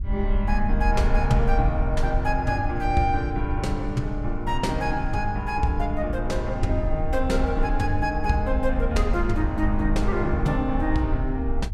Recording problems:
wind noise; below 56 Hz, SNR 4 dB

